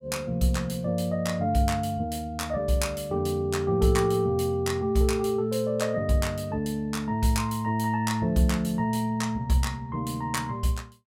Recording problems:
none

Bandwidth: 16.5 kHz